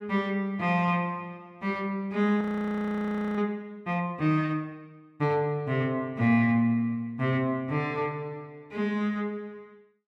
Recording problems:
frozen audio; at 2.5 s for 1 s

